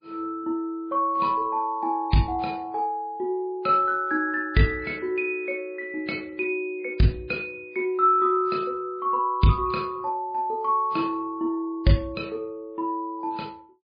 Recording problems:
lossy codec; MP3, log-spectral distance 2 dB, nothing above 4.8 kHz

